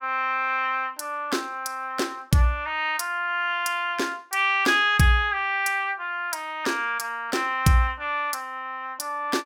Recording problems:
none

